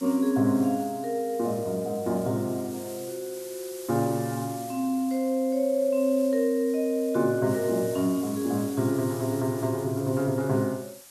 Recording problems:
hiss; slope 0 dB per octave, SNR 17 dB

